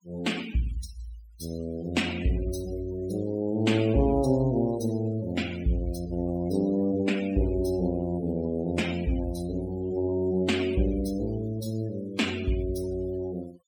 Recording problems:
noise reduction artefacts; signal-to-artefact ratio 16 dB

